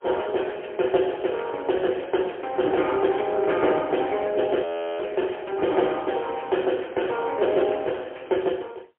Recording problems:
phone line; 280 Hz to 3.2 kHz, AMR-NB, then MP3
audio freezing; at 4.5 s

